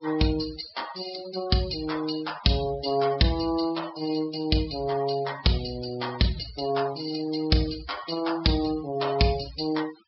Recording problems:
treble cut off; nothing above 5.4 kHz
denoising artefacts; signal-to-artefact ratio 16 dB

